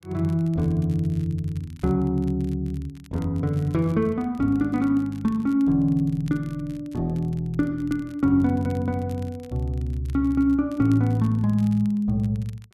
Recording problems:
crackle; vinyl, SNR 30 dB

